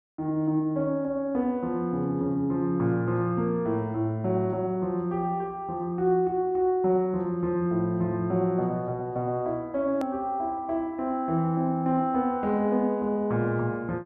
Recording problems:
click at an edit; at 10 s

